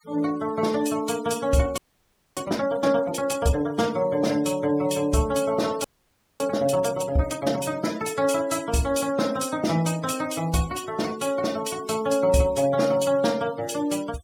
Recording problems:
noise reduction artefacts; signal-to-artefact ratio 18 dB
audio freezing; at 2 s for 0.5 s and at 6 s for 0.5 s

